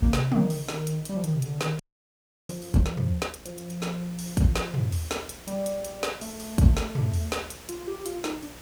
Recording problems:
electrical hum; 60 Hz, harmonics up to 540 Hz, SNR 23 dB
background hiss; slope -2 dB per octave, SNR 19 dB
audio freezing; at 2 s for 0.5 s

